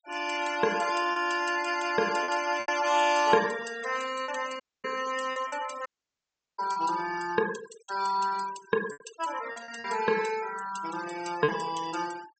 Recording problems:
low-pass filter; nothing above 8 kHz
noise reduction artefacts; signal-to-artefact ratio 14 dB
packet loss; 5% of the sound replaced, filled with repeated pitch periods
dropout; at 4.5 s and at 6 s for 0.5 s

